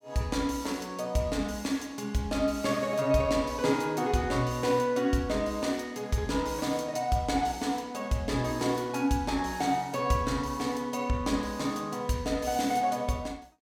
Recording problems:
none

